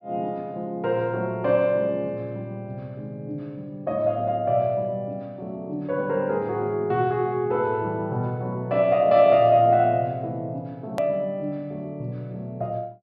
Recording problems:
treble missing; nothing above 5.5 kHz
hard cut with a click; at 11 s

